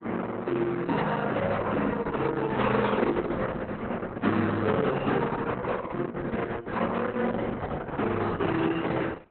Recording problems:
lossy compression; AAC, then Opus, log-spectral distance 4 dB, nothing above 4 kHz

